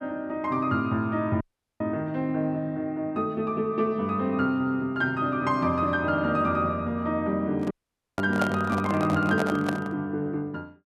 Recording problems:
dropout; at 1.5 s and at 7.5 s
microphone handling noise; from 7.5 to 10 s; peak +2 dB vs average level

